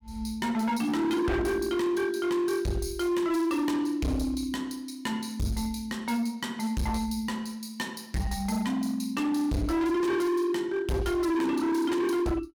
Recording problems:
distorted audio; hard clipping, signal-to-distortion ratio 7 dB

